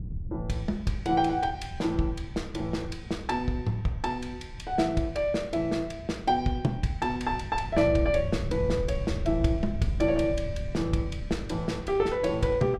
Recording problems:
wind noise; below 110 Hz, SNR 9 dB

